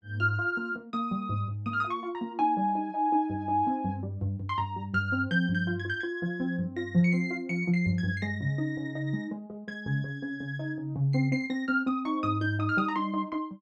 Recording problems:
none

